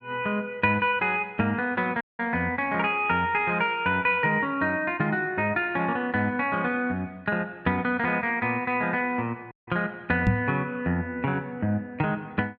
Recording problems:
audio cutting out; at 2 s and at 9.5 s
microphone thump; at 10 s; peak +7 dB vs average level

